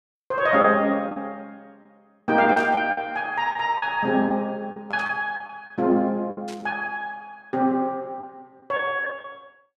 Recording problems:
lost packets; 7% of the sound replaced, filled with the last packet
static burst; at 2.5 s, at 5 s and at 6.5 s; peak -12 dB vs average level

